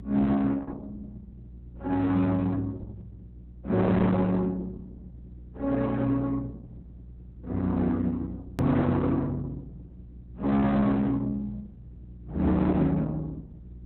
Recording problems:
codec artefacts; Opus, log-spectral distance 2 dB, nothing above 15.6 kHz
distorted audio; hard clipping, signal-to-distortion ratio 7 dB
hum; 60 Hz, harmonics up to 360 Hz, SNR 19 dB
hard cut with a click; at 8.5 s

